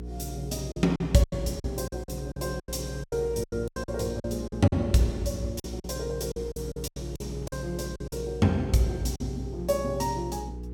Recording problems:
electrical hum; 60 Hz, harmonics up to 480 Hz, SNR 9 dB
wind noise; below 620 Hz, SNR 24 dB
packet loss; 12% of the sound replaced, filled with silence

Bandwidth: 17.5 kHz